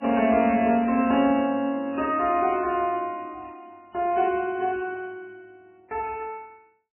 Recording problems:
lossy compression; MP3, log-spectral distance 3 dB, nothing above 2.4 kHz

